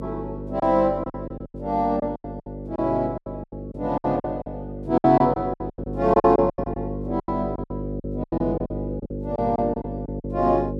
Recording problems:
hum; 50 Hz, harmonics up to 550 Hz, SNR 9 dB
lost packets; 16% of the sound replaced, filled with silence

